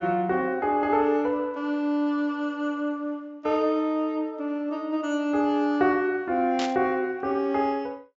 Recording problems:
treble missing; nothing above 8 kHz
static burst; at 6.5 s; peak -3 dB vs average level

